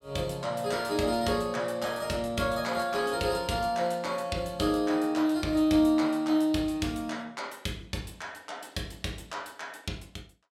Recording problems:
none

